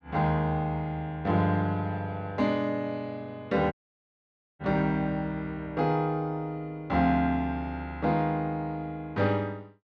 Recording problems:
audio cutting out; at 3.5 s for 1 s

